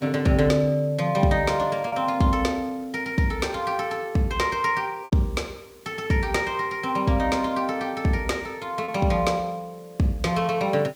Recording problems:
background hiss; SNR 29 dB
packet loss; 1.5% of the sound replaced, filled with repeated pitch periods

